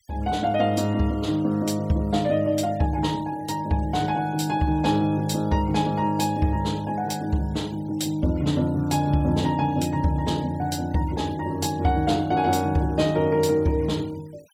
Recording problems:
denoising artefacts; signal-to-artefact ratio 25 dB

